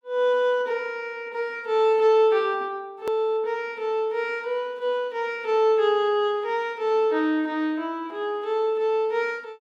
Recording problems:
click at an edit; at 3 s

